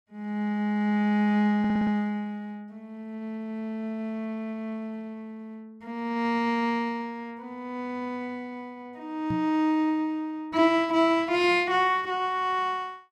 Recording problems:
audio stuttering; at 1.5 s
microphone bump; at 9.5 s; peak -2 dB vs average level

